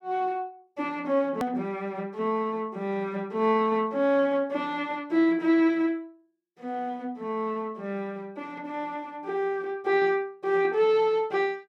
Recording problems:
hard cut with a click; at 1.5 s

